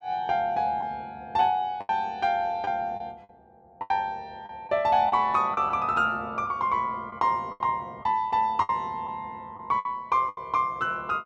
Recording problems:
lost packets; 7% of the sound replaced, filled with the last packet

